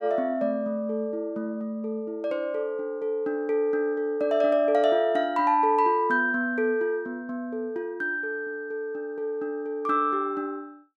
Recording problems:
none

